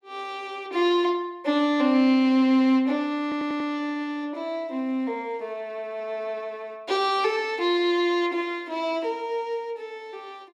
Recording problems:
stutter; at 3 s

